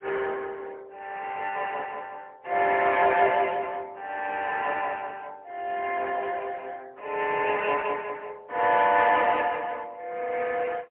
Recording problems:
telephone audio; 340 Hz to 3.2 kHz, AMR-NB, then MP3

